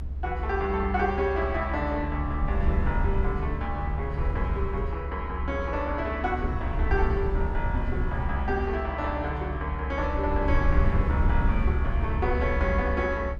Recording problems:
low-frequency rumble; below 76 Hz, SNR 0 dB

